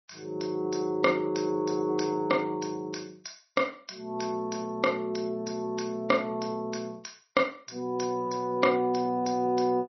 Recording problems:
lossy codec; MP3, log-spectral distance 6 dB, nothing above 5.8 kHz

